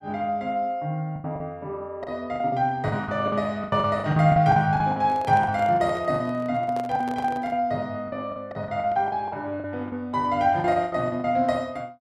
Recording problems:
lost packets; 14% of the sound replaced, filled with the last packet
microphone handling noise; from 5 to 7.5 s; peak -8 dB vs average level

